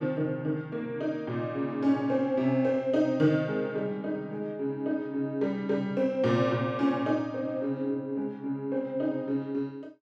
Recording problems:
none

